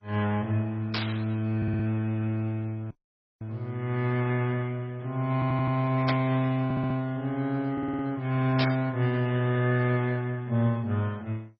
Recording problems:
codec artefacts; MP3, then MP2, log-spectral distance 2 dB
static burst; at 1 s, at 6 s and at 8.5 s; peak +2 dB vs average level
audio stuttering; 4 times, first at 1.5 s
audio cutting out; at 3 s for 0.5 s

